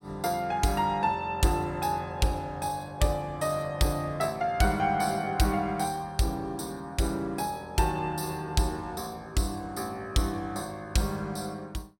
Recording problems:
none

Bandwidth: 16 kHz